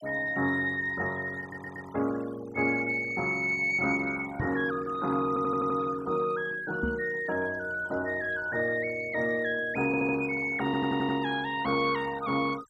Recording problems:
denoising artefacts; signal-to-artefact ratio 19 dB
stutter; 4 times, first at 1.5 s
microphone thump; at 4.5 s and at 7 s; peak 0 dB vs average level

